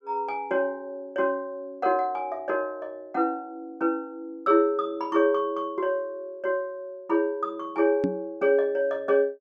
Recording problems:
microphone thump; at 8 s; peak +4 dB vs average level

